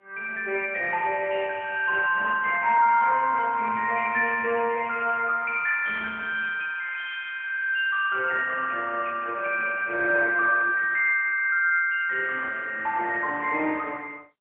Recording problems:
telephone audio; 340 Hz to 3.1 kHz, AMR-NB, then MP3

